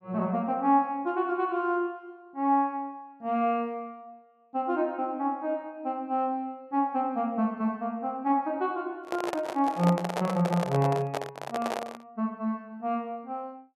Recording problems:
handling noise; from 9 to 12 s; peak +2 dB vs average level

